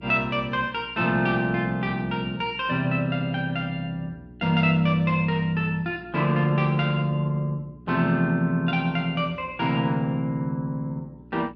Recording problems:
hum; 60 Hz, harmonics up to 420 Hz, SNR 23 dB

